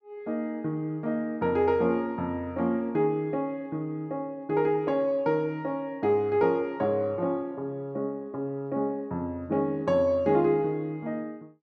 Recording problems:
none

